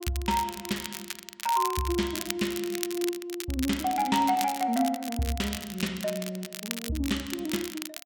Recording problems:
crackle; vinyl, SNR 8 dB

